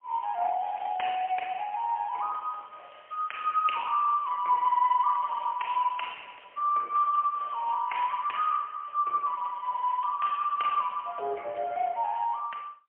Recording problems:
phone line; 300 Hz to 3.1 kHz, AMR-NB, then MP3

